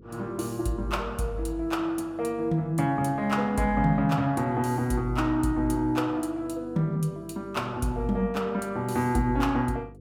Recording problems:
hum; 50 Hz, harmonics up to 500 Hz, SNR 22 dB

